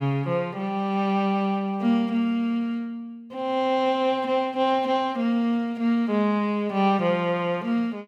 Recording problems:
none

